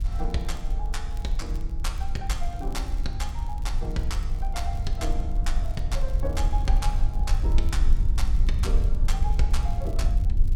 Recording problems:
low-frequency rumble; below 52 Hz, SNR -7 dB
crackling; vinyl, SNR 22 dB

